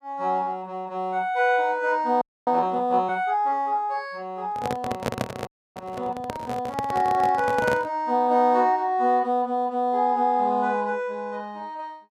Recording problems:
frozen audio; at 2 s and at 5.5 s
microphone handling noise; from 4.5 to 8 s; peak +1 dB vs average level

